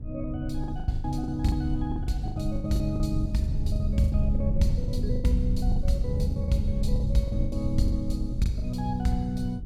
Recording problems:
low-frequency rumble; below 88 Hz, SNR 2 dB
lost packets; 14% of the sound replaced, filled with the last packet

